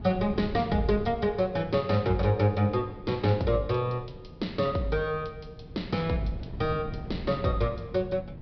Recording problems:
treble cut off; nothing above 5.5 kHz
wind noise; below 180 Hz, SNR 13 dB

